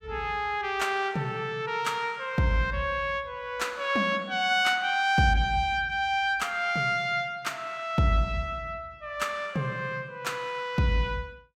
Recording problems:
none

